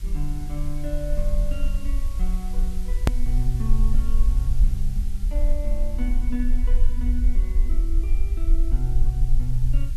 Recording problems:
hum; 50 Hz, harmonics up to 400 Hz, SNR 24 dB
hiss; slope +2 dB per octave, SNR 16 dB
low-frequency rumble; below 42 Hz, strongest tone 18 Hz, SNR -8 dB
edit click; at 3 s

